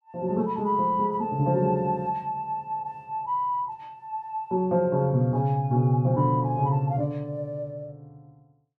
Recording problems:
none

